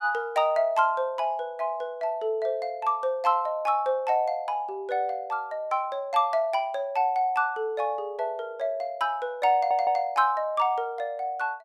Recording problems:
audio stuttering; at 9.5 s

